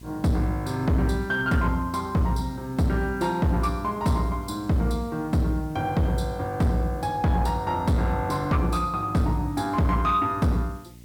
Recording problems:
distorted audio; soft clipping, signal-to-distortion ratio 12 dB
hum; 60 Hz, harmonics up to 660 Hz, SNR 21 dB
background hiss; SNR 28 dB

